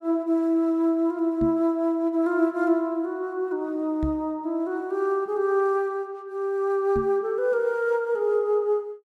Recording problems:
microphone bump; at 1.5 s, at 4 s and at 7 s; peak -2 dB vs average level

